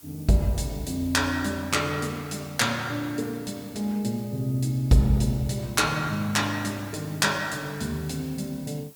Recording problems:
hiss; SNR 21 dB

